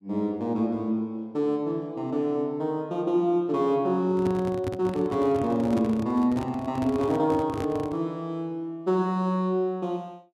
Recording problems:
handling noise; from 4 to 8 s; peak -2 dB vs average level

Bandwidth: 13 kHz